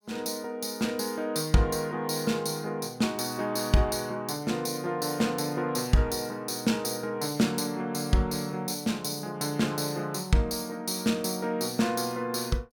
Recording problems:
none

